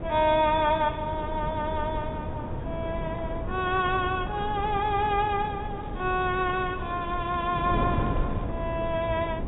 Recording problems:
treble cut off; nothing above 4 kHz
wind on the microphone; below 340 Hz, SNR 6 dB
crackle; at 5 s and from 6 to 8.5 s; loose cable, SNR 29 dB

